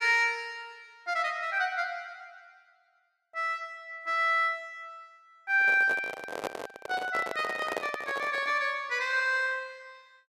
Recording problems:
handling noise; from 5.5 to 8.5 s; peak 0 dB vs average level

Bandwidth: 14 kHz